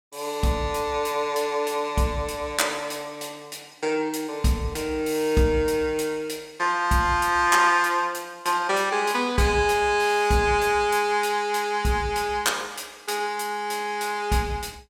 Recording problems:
none

